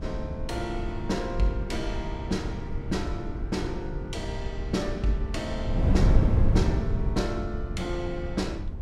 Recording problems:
wind on the microphone; below 120 Hz, SNR -2 dB

